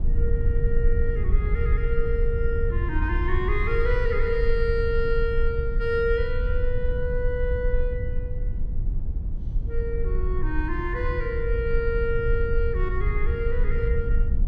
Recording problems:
low-frequency rumble; below 62 Hz, strongest tone 22 Hz, SNR -1 dB

